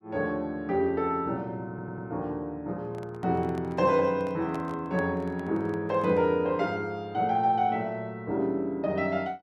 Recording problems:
audio stuttering; at 1.5 s
handling noise; from 3 to 6.5 s; peak -9 dB vs average level

